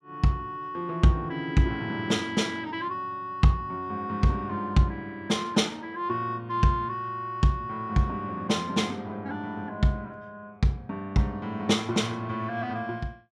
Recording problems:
none

